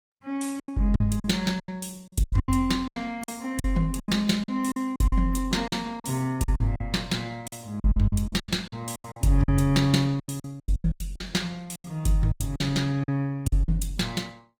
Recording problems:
lossy codec; Opus, log-spectral distance 3 dB, nothing above 19 kHz
packet loss; 16% of the sound replaced, filled with silence

